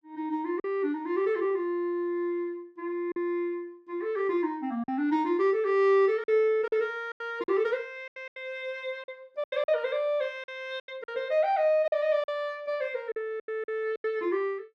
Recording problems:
packet loss; 8% of the sound replaced, filled with silence

